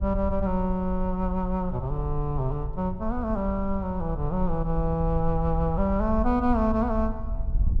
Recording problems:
wind on the microphone; below 60 Hz, SNR 6 dB

